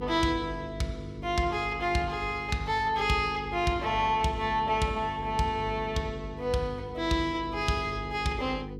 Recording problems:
hum; 50 Hz, harmonics up to 500 Hz, SNR 12 dB

